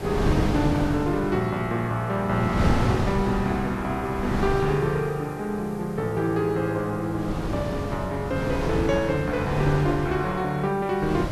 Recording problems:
background hiss; slope +1 dB per octave, SNR 27 dB
wind noise; below 440 Hz, SNR 4 dB

